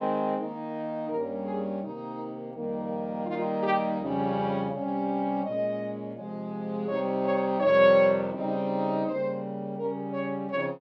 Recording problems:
none

